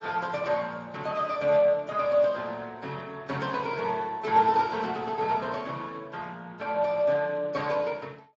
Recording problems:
lossy compression; Speex, then AAC, log-spectral distance 3 dB

